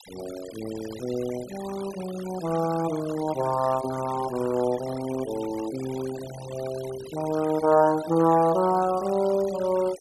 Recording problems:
denoising artefacts; signal-to-artefact ratio 17 dB

